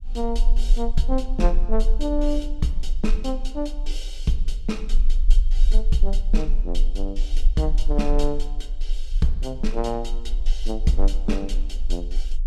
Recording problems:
low-frequency rumble; below 34 Hz, strongest tone 24 Hz, SNR -1 dB

